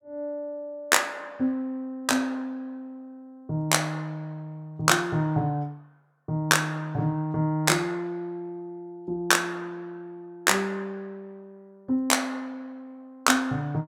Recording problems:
none

